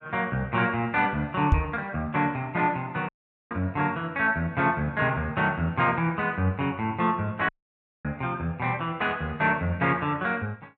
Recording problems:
microphone bump; at 1.5 s; peak +8 dB vs average level
audio cutting out; at 3 s and at 7.5 s for 0.5 s

